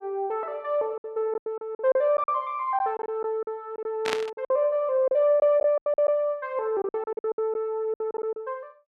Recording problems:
lost packets; 13% of the sound replaced, filled with silence
burst of static; at 4 s; peak +2 dB vs average level

